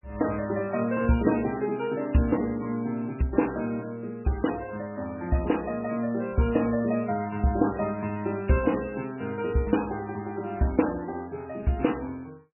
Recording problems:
lossy compression; MP3, log-spectral distance 4 dB, nothing above 2.9 kHz

